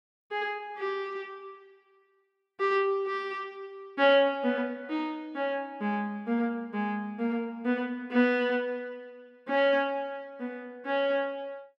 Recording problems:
none

